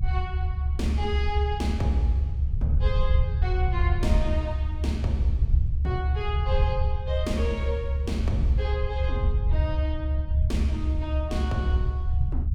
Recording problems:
rumble; below 74 Hz, SNR -5 dB

